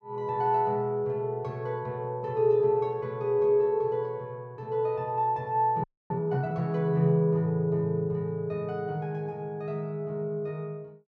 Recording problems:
audio freezing; at 6 s

